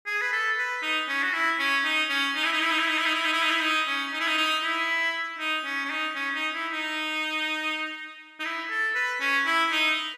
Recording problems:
none

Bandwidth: 14.5 kHz